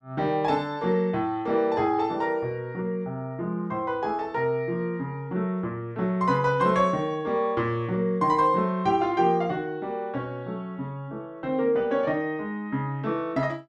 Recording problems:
none

